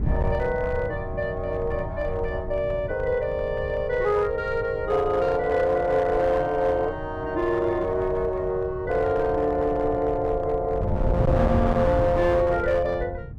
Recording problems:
distorted audio; hard clipping, uneven, signal-to-distortion ratio 11 dB
wind on the microphone; below 160 Hz, SNR 8 dB

